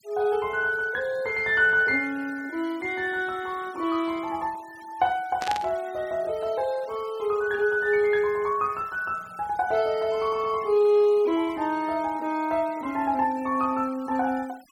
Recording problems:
noise reduction artefacts; signal-to-artefact ratio 24 dB
burst of static; at 5.5 s; peak -3 dB vs average level

